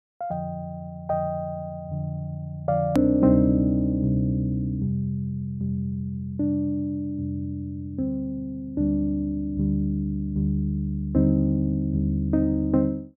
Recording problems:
edit click; at 3 s

